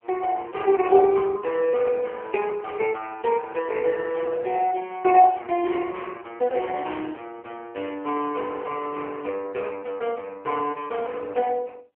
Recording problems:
phone line; 300 Hz to 3.1 kHz, AMR-NB

